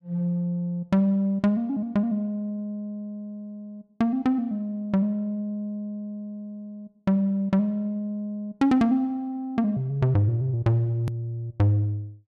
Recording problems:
edit click; at 11 s

